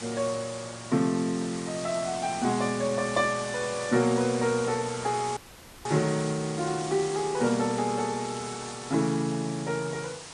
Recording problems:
lossy compression; MP3, log-spectral distance 11 dB
background hiss; slope -1 dB per octave, SNR 11 dB
crackle; from 1.5 to 4 s and from 6 to 9.5 s; loose cable, SNR 23 dB
audio cutting out; at 5.5 s

